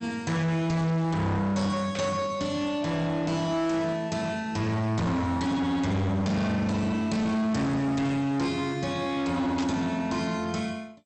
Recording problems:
codec artefacts; MP2, log-spectral distance 2 dB, nothing above 8.5 kHz
distortion; hard clipping, signal-to-distortion ratio 7 dB
burst of static; at 2 s and at 9.5 s; peak -6 dB vs average level

